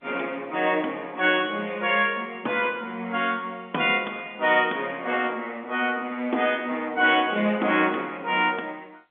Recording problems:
phone line; 220 Hz to 3.7 kHz, G.711

